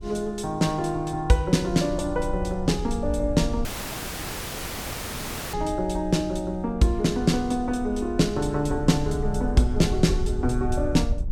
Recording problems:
wind on the microphone; below 68 Hz, SNR 9 dB
audio cutting out; at 3.5 s for 2 s

